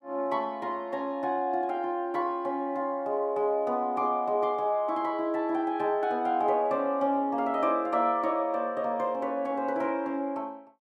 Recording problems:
none

